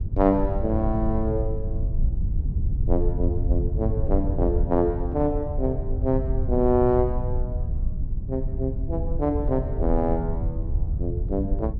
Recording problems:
low-frequency rumble; below 84 Hz, SNR 2 dB

